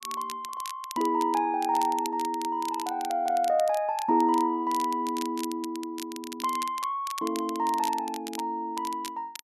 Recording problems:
crackle; vinyl, SNR 14 dB

